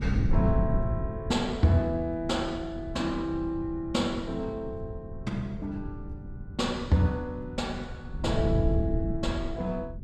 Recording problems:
wind on the microphone; below 140 Hz, SNR 4 dB

